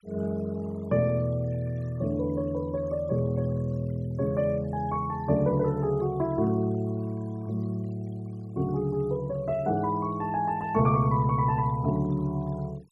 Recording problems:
noise reduction artefacts; signal-to-artefact ratio 26 dB

